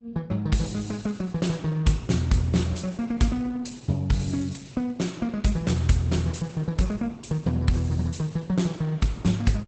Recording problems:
codec artefacts; Opus, log-spectral distance 4 dB, nothing above 8 kHz

